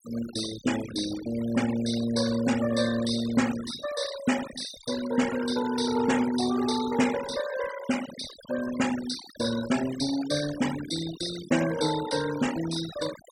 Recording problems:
noise reduction artefacts; signal-to-artefact ratio 11 dB

